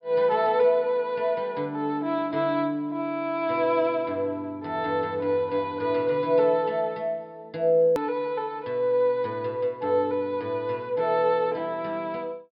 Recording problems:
treble cut off; nothing above 5.5 kHz
click at an edit; at 8 s

